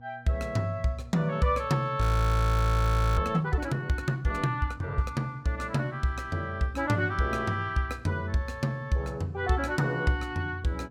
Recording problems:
hum; 60 Hz, harmonics up to 720 Hz, SNR 23 dB
frozen audio; at 2 s for 1 s

